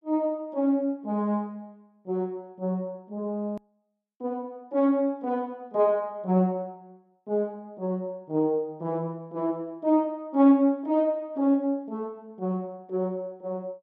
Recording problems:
hard cut with a click; at 3.5 s

